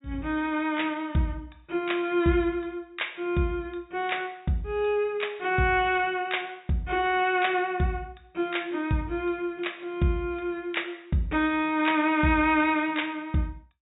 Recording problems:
treble missing; nothing above 4 kHz

